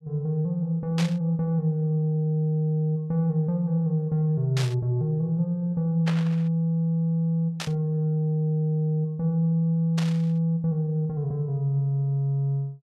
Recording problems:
static burst; 5 times, first at 1 s; peak -3 dB vs average level

